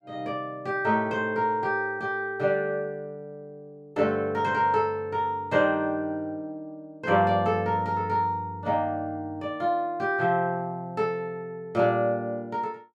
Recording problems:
none

